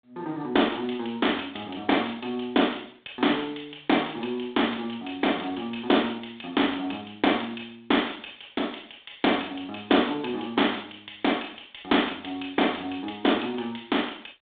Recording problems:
phone line; 240 Hz to 3.7 kHz, G.726

